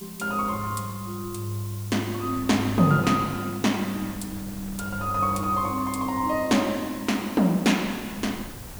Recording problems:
hiss; slope 0 dB per octave, SNR 16 dB
wind noise; below 330 Hz, SNR 20 dB

